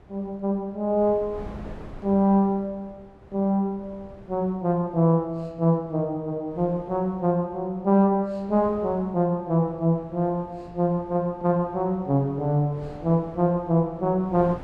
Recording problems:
wind on the microphone; below 500 Hz, SNR 22 dB

